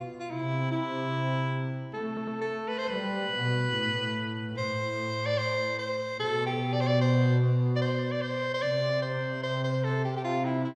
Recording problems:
stutter; at 2 s

